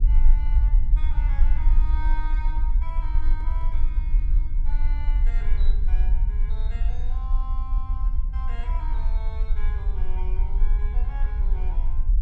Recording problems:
rumble; below 44 Hz, strongest tone 22 Hz, SNR -17 dB
handling noise; from 3 to 4.5 s; peak -8 dB vs average level

